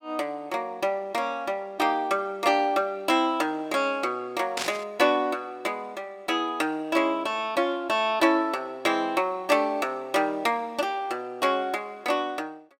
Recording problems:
burst of static; at 4.5 s; peak +1 dB vs average level

